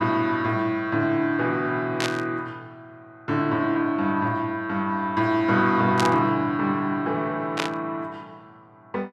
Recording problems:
burst of static; at 2 s, at 6 s and at 7.5 s; peak +2 dB vs average level

